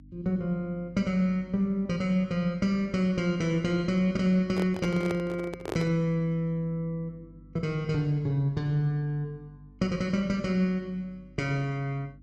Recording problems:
hum; 50 Hz, harmonics up to 300 Hz, SNR 24 dB
microphone handling noise; from 4.5 to 6 s; peak -1 dB vs average level

